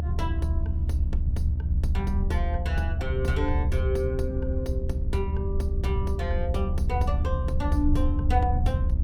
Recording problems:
hum; 60 Hz, harmonics up to 900 Hz, SNR 9 dB
low-frequency rumble; below 76 Hz, SNR -4 dB

